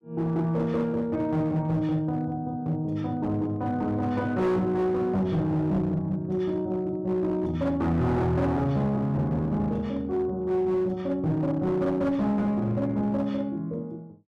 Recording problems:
distorted audio; hard clipping, uneven, signal-to-distortion ratio 11 dB

